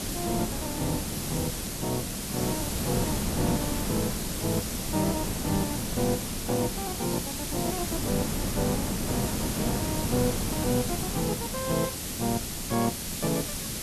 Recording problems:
background hiss; slope +3 dB per octave, SNR 1 dB
wind noise; below 390 Hz, SNR 2 dB

